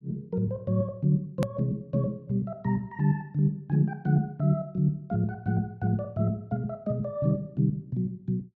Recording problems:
hard cut with a click; at 1.5 s

